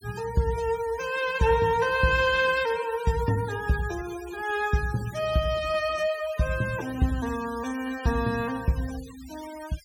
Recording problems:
denoising artefacts; signal-to-artefact ratio 17 dB

